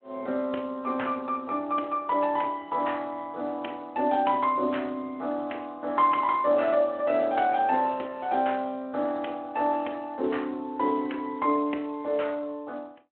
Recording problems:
telephone audio; 220 Hz to 3.4 kHz, Speex

